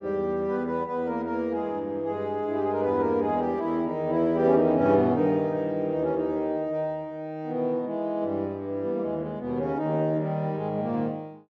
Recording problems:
none

